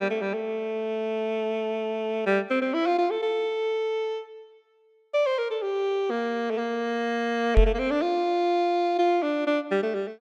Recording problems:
knock on the microphone; at 7.5 s; peak +9 dB vs average level

